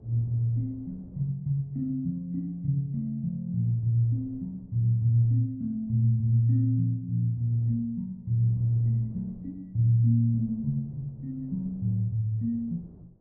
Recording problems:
wind noise; below 260 Hz, SNR 26 dB

